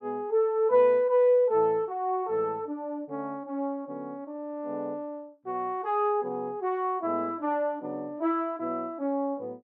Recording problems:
none

